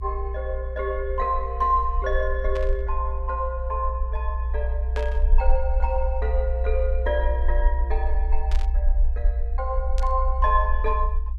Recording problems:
low-frequency rumble; below 60 Hz, SNR -1 dB
static burst; 4 times, first at 2.5 s; peak -6 dB vs average level

